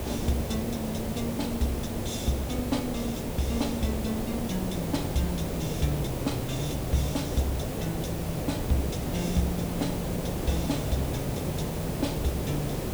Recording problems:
background hiss; SNR 0 dB
wind on the microphone; below 580 Hz, SNR 26 dB

